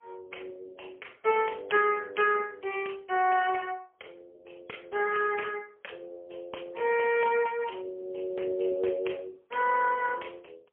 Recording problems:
phone line; 370 Hz to 3.2 kHz, AMR-NB, then MP3

